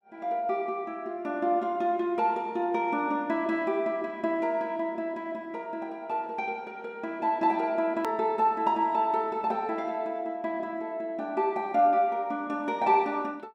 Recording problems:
edit click; at 8 s

